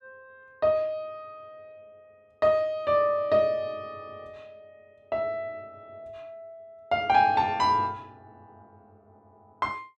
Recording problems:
none

